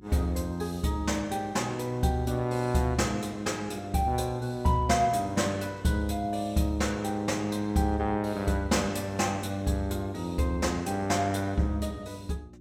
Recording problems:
mains hum; 60 Hz, harmonics up to 360 Hz, SNR 24 dB

